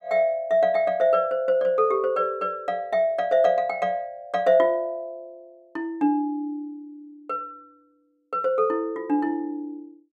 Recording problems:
none

